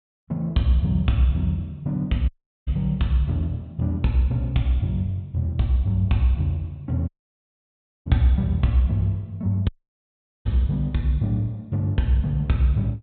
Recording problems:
low-pass filter; nothing above 4 kHz
dropout; at 2.5 s, at 7 s for 1 s and at 9.5 s for 1 s

